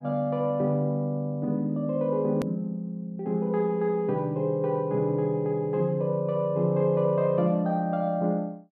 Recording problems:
edit click; at 2.5 s

